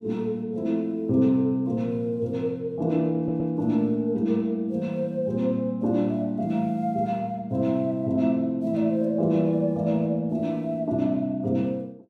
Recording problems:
audio stuttering; at 3 s

